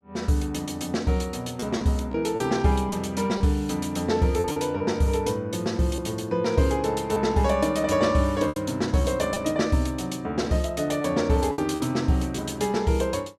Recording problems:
lost packets; 4% of the sound replaced, filled with repeated pitch periods

